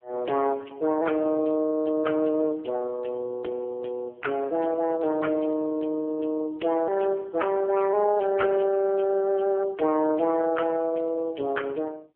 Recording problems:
phone line; 260 Hz to 3.2 kHz, AMR-NB

